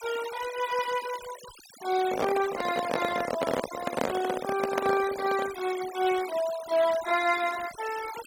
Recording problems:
denoising artefacts; signal-to-artefact ratio 12 dB
handling noise; from 2 to 5.5 s; peak +5 dB vs average level

